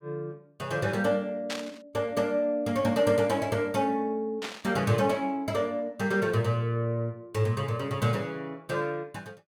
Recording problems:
burst of static; at 1.5 s and at 4.5 s; peak -2 dB vs average level

